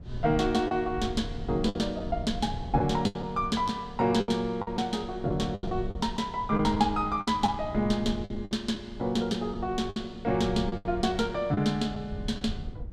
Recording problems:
low-frequency rumble; below 110 Hz, SNR 12 dB
packet loss; 8% of the sound replaced, filled with the last packet

